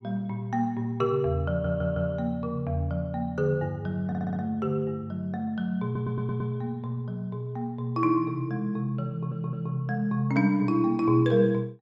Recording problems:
stutter; 4 times, first at 1.5 s

